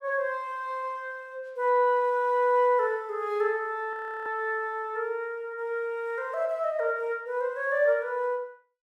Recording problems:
frozen audio; at 4 s

